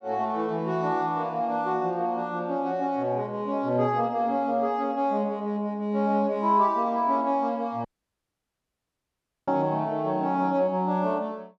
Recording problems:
audio cutting out; at 8 s for 1.5 s

